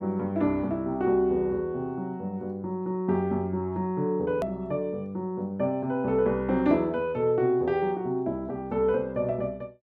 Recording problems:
hard cut with a click; at 4.5 s

